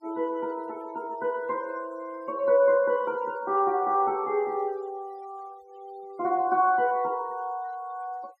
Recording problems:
denoising artefacts; signal-to-artefact ratio 26 dB

